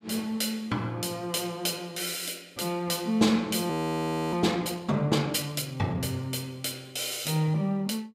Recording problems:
frozen audio; at 3.5 s for 0.5 s

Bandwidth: 15.5 kHz